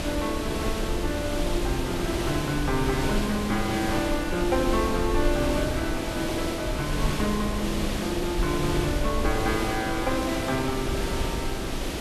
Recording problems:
hiss; slope -5 dB per octave, SNR 2 dB
rumble; below 62 Hz, SNR 7 dB

